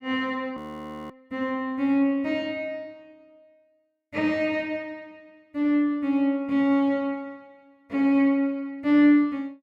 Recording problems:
audio freezing; at 0.5 s for 0.5 s

